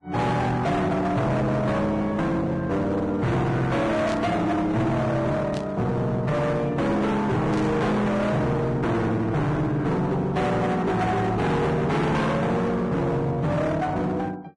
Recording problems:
lossy compression; Vorbis, log-spectral distance 2 dB, nothing above 10.4 kHz
distortion; hard clipping, uneven, signal-to-distortion ratio 5 dB
static burst; at 4 s, at 5.5 s and at 7.5 s; peak -10 dB vs average level

